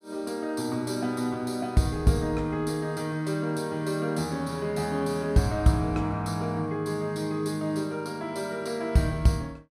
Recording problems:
none

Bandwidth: 15 kHz